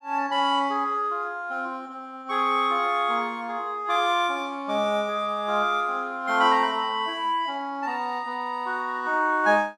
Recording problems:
none

